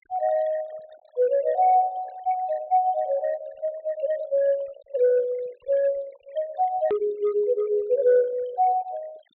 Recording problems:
treble cut off; nothing above 4 kHz
noise reduction artefacts; signal-to-artefact ratio 23 dB
click at an edit; at 7 s

